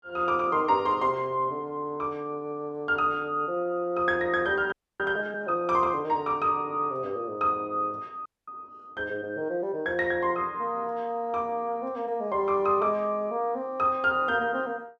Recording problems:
audio freezing; at 4.5 s and at 8.5 s

